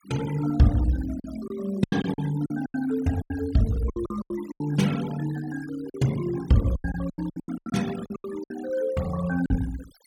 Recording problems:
denoising artefacts; signal-to-artefact ratio 17 dB
lost packets; 14% of the sound replaced, filled with silence

